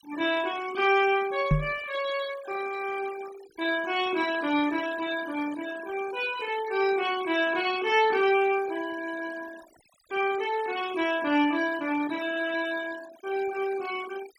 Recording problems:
noise reduction artefacts; signal-to-artefact ratio 15 dB
microphone thump; at 1.5 s; peak +7 dB vs average level

